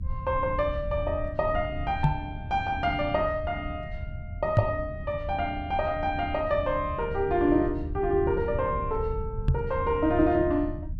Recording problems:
low-frequency rumble; below 100 Hz, SNR 9 dB
microphone bump; at 2 s, at 4.5 s and at 9.5 s; peak +8 dB vs average level

